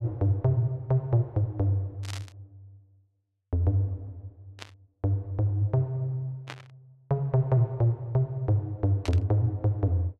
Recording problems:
burst of static; 4 times, first at 2 s; peak -7 dB vs average level

